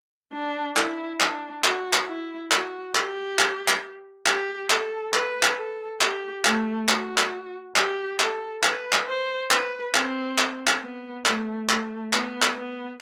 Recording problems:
lossy compression; Opus, log-spectral distance 3 dB, nothing above 20.1 kHz

